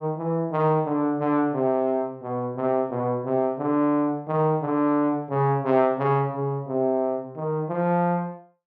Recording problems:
none

